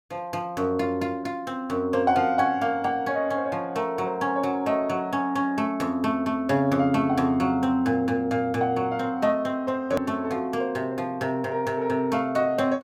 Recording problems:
edit click; at 10 s

